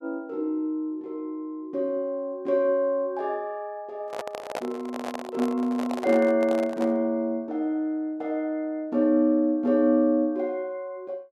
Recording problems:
microphone handling noise; from 4 to 7 s; peak -2 dB vs average level

